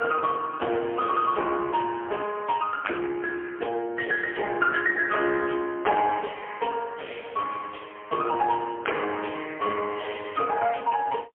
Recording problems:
phone line; 300 Hz to 3.2 kHz, AMR-NB, then MP3

